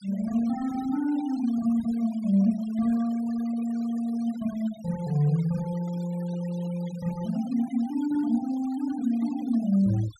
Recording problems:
noise reduction artefacts; signal-to-artefact ratio 21 dB

